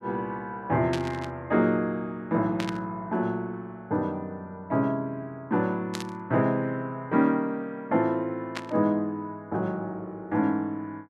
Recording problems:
burst of static; 4 times, first at 1 s; peak -2 dB vs average level

